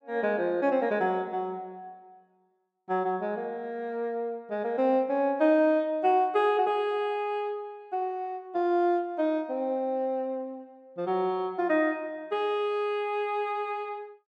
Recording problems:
none

